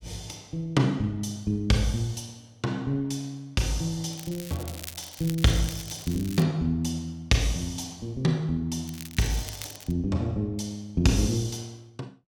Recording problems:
crackle; from 4 to 6.5 s and from 9 to 10 s; loose cable, SNR 13 dB

